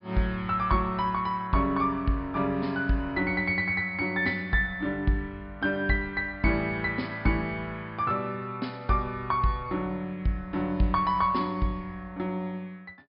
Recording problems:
treble cut off; nothing above 5.5 kHz

